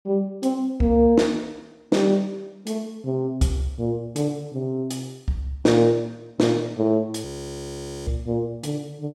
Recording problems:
audio freezing; at 7.5 s for 1 s

